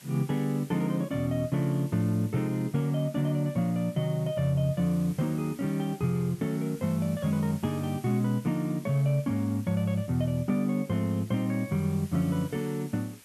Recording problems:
background hiss; slope 0 dB per octave, SNR 22 dB

